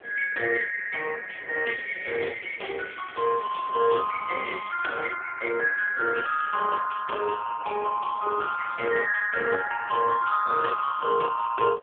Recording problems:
phone line; 320 Hz to 2.5 kHz, AMR-NB
wind noise; below 870 Hz, SNR 20 dB
crackle; from 1.5 to 3.5 s and at 4.5 s; loose cable, SNR 19 dB

